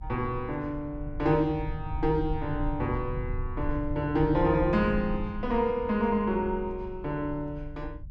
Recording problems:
rumble; below 86 Hz, SNR 9 dB

